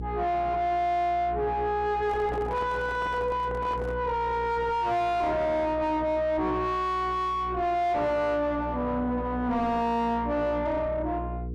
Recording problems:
distortion; soft clipping, signal-to-distortion ratio 7 dB
electrical hum; 60 Hz, harmonics up to 480 Hz, SNR 10 dB
handling noise; from 2 to 4 s; peak -5 dB vs average level

